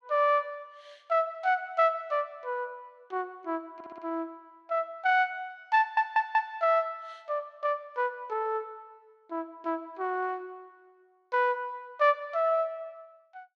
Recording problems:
stutter; at 4 s and at 6 s

